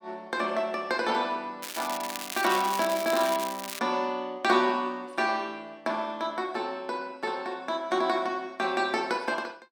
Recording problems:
crackle; from 1.5 to 4 s; loose cable, SNR 7 dB

